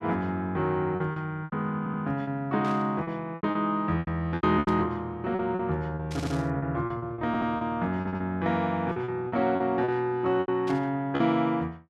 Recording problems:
packet loss; 11% of the sound replaced, filled with repeated pitch periods
audio stuttering; 4 times, first at 2 s
static burst; 4 times, first at 2.5 s; peak -10 dB vs average level

